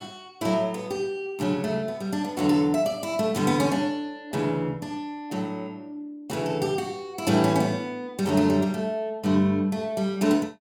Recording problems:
none

